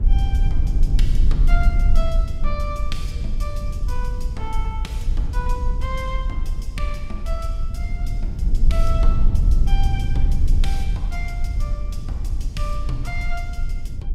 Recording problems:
low-frequency rumble; below 52 Hz, strongest tone 22 Hz, SNR -9 dB

